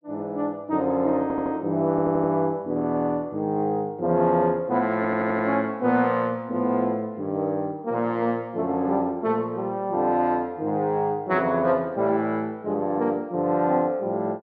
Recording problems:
audio stuttering; at 1 s, at 2 s and at 5 s

